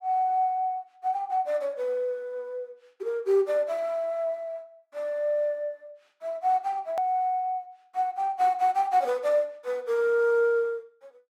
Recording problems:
click at an edit; at 7 s

